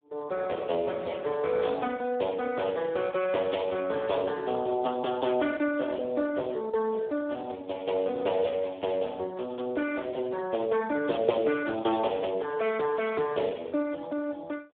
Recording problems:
telephone audio; 320 Hz to 2.9 kHz, Speex

